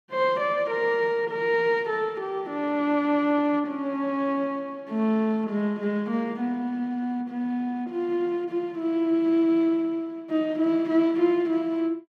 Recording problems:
none

